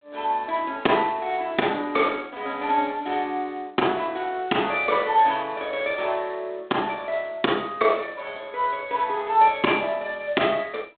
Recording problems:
phone line; 240 Hz to 3.7 kHz, G.726

